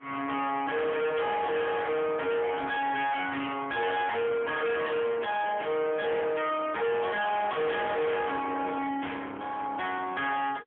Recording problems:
phone line; 320 Hz to 3.3 kHz, AMR-NB, then MP3
distortion; soft clipping, signal-to-distortion ratio 6 dB

